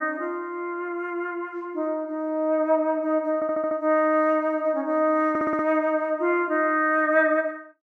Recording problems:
stutter; at 3.5 s and at 5.5 s

